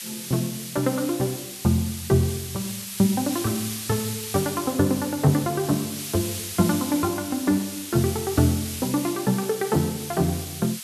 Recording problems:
background hiss; slope +5 dB per octave, SNR 8 dB

